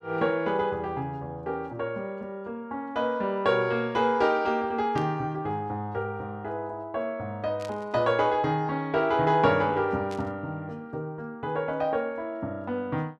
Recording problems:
burst of static; at 5 s, at 7.5 s and at 10 s; peak -12 dB vs average level

